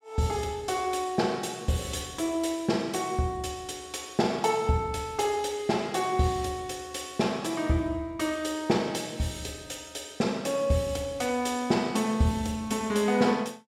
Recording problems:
none

